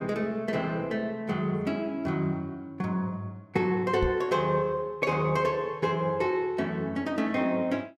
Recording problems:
knock on the microphone; at 4 s; peak +2 dB vs average level

